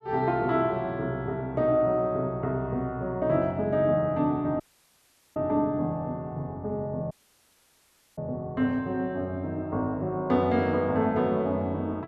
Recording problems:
dropout; at 4.5 s for 1 s and at 7 s for 1 s

